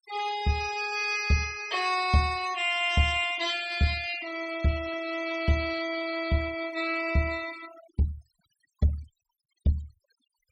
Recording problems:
denoising artefacts; signal-to-artefact ratio 15 dB

